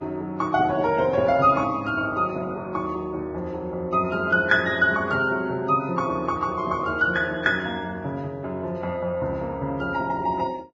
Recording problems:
codec artefacts; Vorbis, log-spectral distance 2 dB

